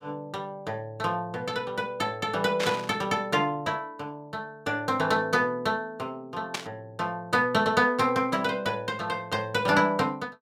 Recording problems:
burst of static; at 2.5 s and at 6.5 s; peak +1 dB vs average level

